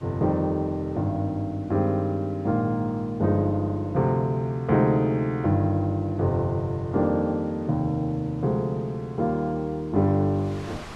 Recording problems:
wind on the microphone; below 1.9 kHz, SNR 26 dB

